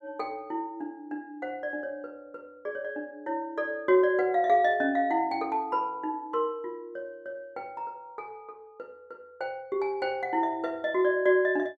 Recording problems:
none

